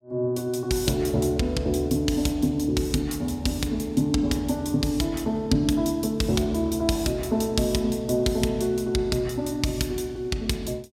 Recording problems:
none

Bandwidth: 16 kHz